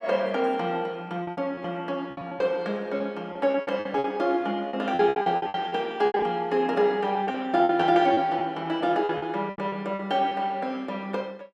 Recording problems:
packet loss; 12% of the sound replaced, filled with repeated pitch periods

